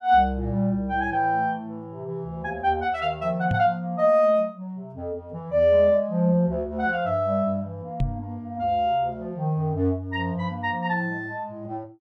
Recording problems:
microphone thump; at 3.5 s and at 8 s; peak +2 dB vs average level

